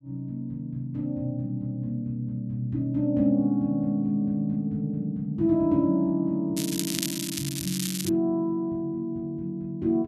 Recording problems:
crackling; from 6.5 to 8 s; loose cable, SNR 4 dB

